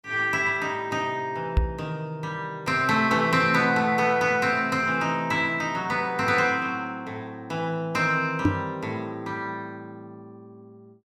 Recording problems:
microphone thump; at 1.5 s and at 8.5 s; peak +7 dB vs average level

